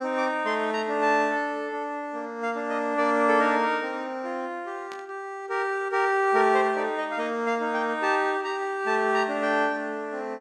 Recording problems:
burst of static; at 5 s; peak -13 dB vs average level

